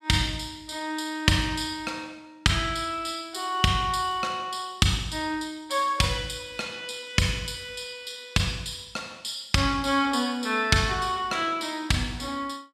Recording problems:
none

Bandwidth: 14 kHz